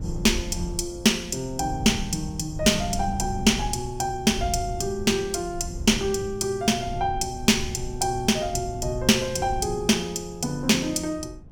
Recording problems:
wind on the microphone; below 120 Hz, SNR 12 dB

